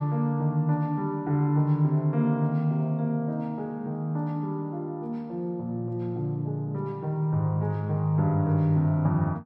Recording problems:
none

